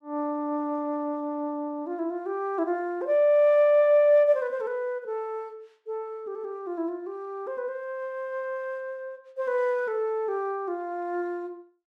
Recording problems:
none

